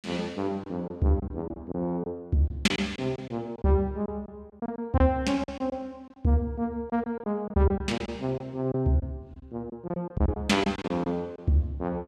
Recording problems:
packet loss; 9% of the sound replaced, filled with silence

